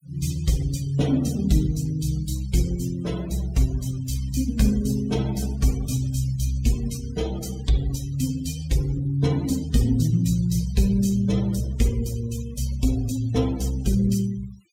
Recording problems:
denoising artefacts; signal-to-artefact ratio 17 dB

